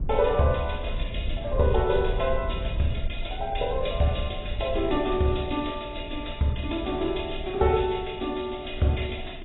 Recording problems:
lossy codec; AAC, log-spectral distance 6 dB, nothing above 3.8 kHz
rumble; below 66 Hz, SNR 9 dB

